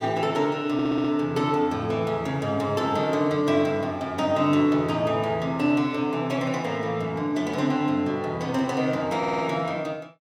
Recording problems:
audio stuttering; at 0.5 s and at 9 s

